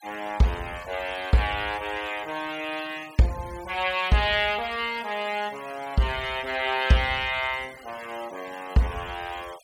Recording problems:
noise reduction artefacts; signal-to-artefact ratio 19 dB

